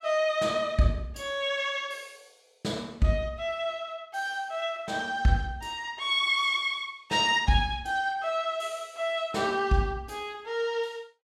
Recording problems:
none

